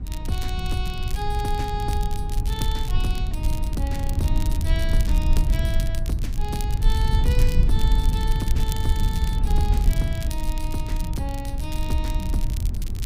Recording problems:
rumble; below 72 Hz, SNR -7 dB
crackle; vinyl, SNR 9 dB

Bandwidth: 15.5 kHz